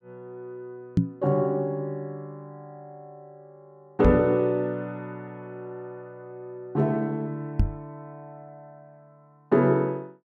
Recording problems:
microphone bump; at 1 s, at 4 s and at 7.5 s; peak +9 dB vs average level

